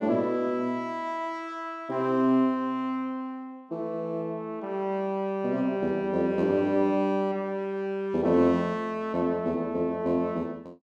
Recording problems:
none

